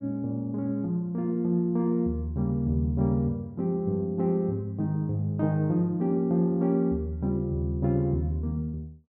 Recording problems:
none

